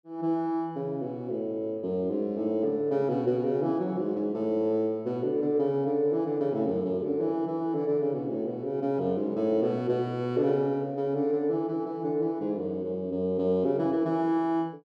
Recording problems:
none

